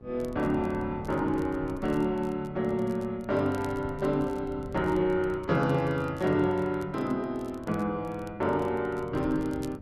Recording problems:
hum; 60 Hz, harmonics up to 780 Hz, SNR 24 dB
wind on the microphone; below 210 Hz, SNR 17 dB
crackle; vinyl, SNR 29 dB

